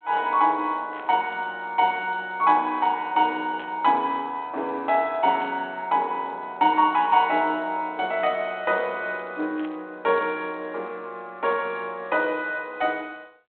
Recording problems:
phone line; 220 Hz to 3.7 kHz, G.726
static burst; 5 times, first at 1 s; peak -15 dB vs average level

